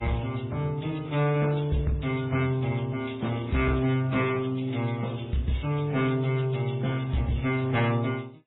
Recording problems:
lossy compression; MP3, then AAC, log-spectral distance 5 dB, nothing above 3.7 kHz
distorted audio; soft clipping, signal-to-distortion ratio 10 dB

